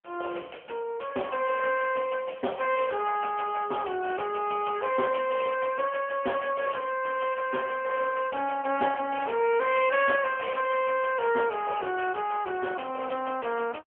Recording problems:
telephone audio; 300 Hz to 3.1 kHz, AMR-NB

